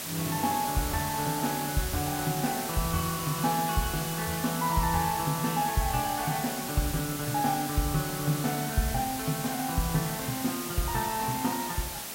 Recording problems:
background hiss; slope -1 dB per octave, SNR 4 dB

